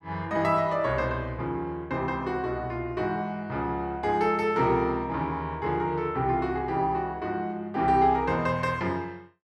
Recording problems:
none

